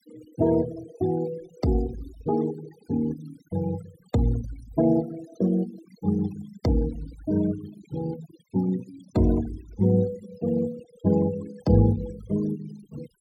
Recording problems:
denoising artefacts; signal-to-artefact ratio 18 dB

